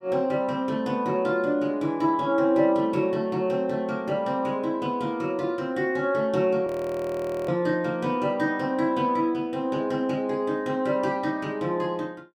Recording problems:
audio freezing; at 6.5 s for 1 s

